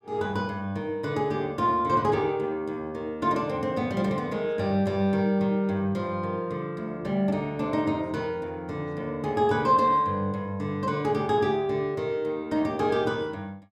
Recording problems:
none

